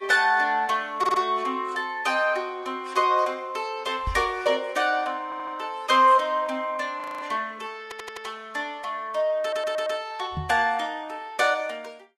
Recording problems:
lossy codec; Vorbis, log-spectral distance 2 dB, nothing above 13.5 kHz
audio stuttering; 4 times, first at 1 s
microphone thump; at 4 s and at 10 s; peak -2 dB vs average level
frozen audio; at 7 s

